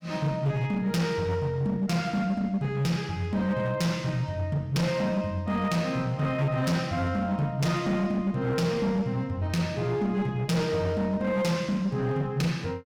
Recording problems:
distorted audio; hard clipping, uneven, signal-to-distortion ratio 11 dB

